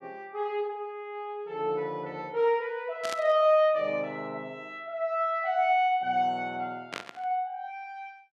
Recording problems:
static burst; at 3 s and at 7 s; peak -3 dB vs average level

